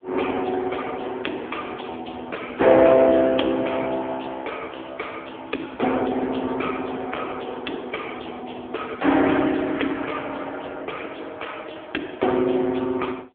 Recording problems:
phone line; 220 Hz to 3.5 kHz, AMR-NB

